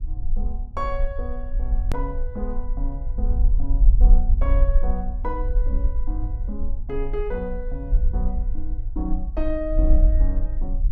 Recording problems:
low-frequency rumble; below 48 Hz, SNR -8 dB
hard cut with a click; at 2 s

